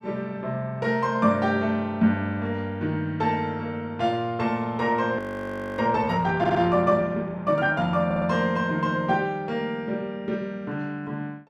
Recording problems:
frozen audio; at 5 s for 0.5 s
audio stuttering; at 6.5 s and at 8 s

